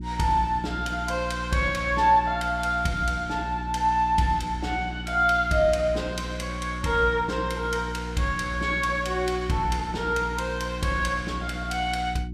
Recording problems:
mains hum; 60 Hz, harmonics up to 360 Hz, SNR 10 dB

